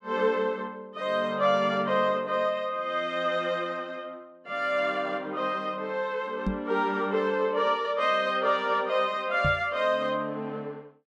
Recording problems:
microphone thump; at 6.5 s and at 9.5 s; peak +1 dB vs average level

